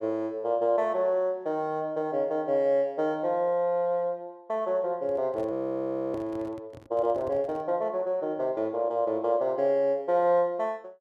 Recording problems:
handling noise; from 5 to 7.5 s; peak -13 dB vs average level
audio freezing; at 5.5 s for 0.5 s

